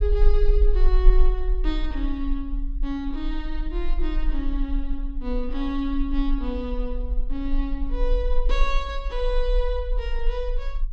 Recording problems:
rumble; below 38 Hz, strongest tone 22 Hz, SNR -2 dB

